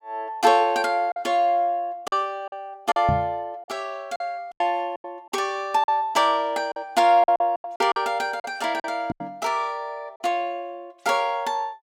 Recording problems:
packet loss; 8% of the sound replaced, filled with silence
microphone thump; at 3 s and at 9 s; peak +2 dB vs average level

